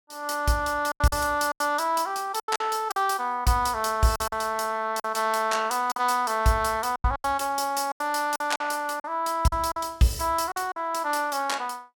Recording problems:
packet loss; 9% of the sound replaced, filled with silence

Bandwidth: 17.5 kHz